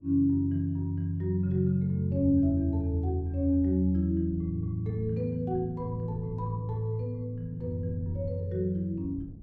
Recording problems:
wind on the microphone; below 180 Hz, SNR 19 dB

